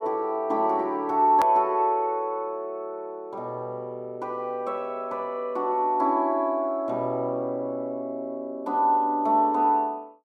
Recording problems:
hard cut with a click; at 1.5 s

